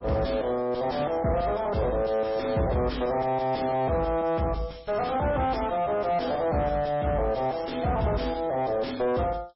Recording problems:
codec artefacts; MP3, log-spectral distance 4 dB, nothing above 5.5 kHz
distorted audio; soft clipping, signal-to-distortion ratio 4 dB

